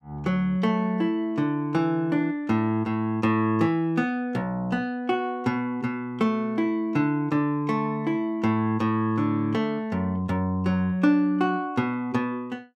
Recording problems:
none

